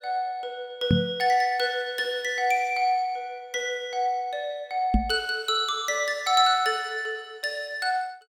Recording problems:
microphone bump; at 1 s and at 5 s; peak +7 dB vs average level

